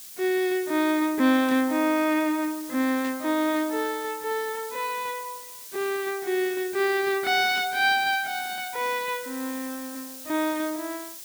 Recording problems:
hiss; SNR 13 dB
burst of static; at 1.5 s, at 3 s and at 7.5 s; peak -13 dB vs average level

